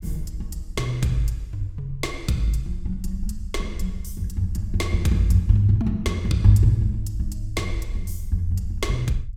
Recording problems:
low-frequency rumble; below 60 Hz, SNR 11 dB

